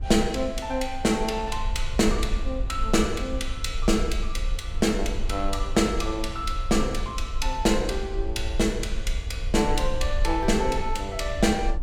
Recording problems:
low-frequency rumble; below 52 Hz, strongest tone 20 Hz, SNR 6 dB

